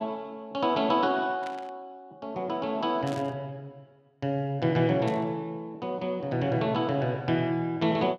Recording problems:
static burst; at 1.5 s, at 3 s and at 5 s; peak -11 dB vs average level

